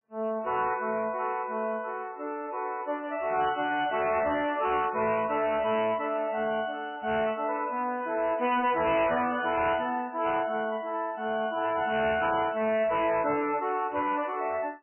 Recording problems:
lossy compression; MP3, log-spectral distance 3 dB, nothing above 3 kHz
distortion; hard clipping, uneven, signal-to-distortion ratio 10 dB

